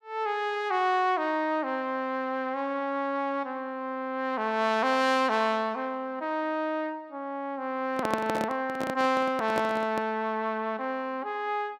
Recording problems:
microphone handling noise; from 8 to 10 s; peak +2 dB vs average level

